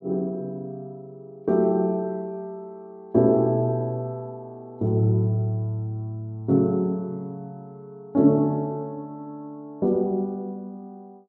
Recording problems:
none

